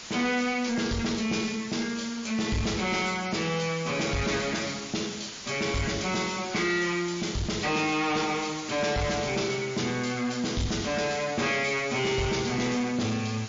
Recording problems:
lossy compression; MP3, log-spectral distance 15 dB
distortion; soft clipping, signal-to-distortion ratio 10 dB
background hiss; slope 0 dB per octave, SNR 12 dB

